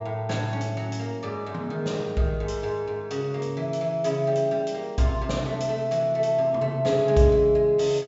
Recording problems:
low-pass filter; nothing above 8 kHz

